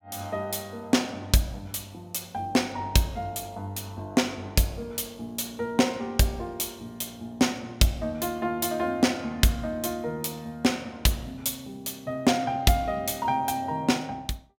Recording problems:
none

